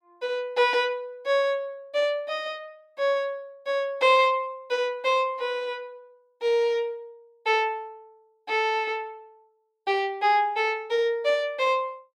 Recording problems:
none

